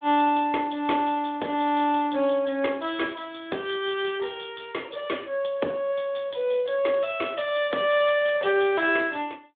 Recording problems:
phone line; 240 Hz to 3.6 kHz, Speex

